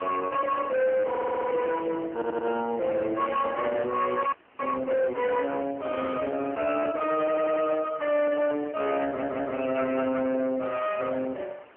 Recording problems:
phone line; 220 Hz to 2.9 kHz, AMR-NB
distorted audio; hard clipping, signal-to-distortion ratio 11 dB
hiss; SNR 26 dB
audio stuttering; 4 times, first at 1 s
audio freezing; at 4.5 s

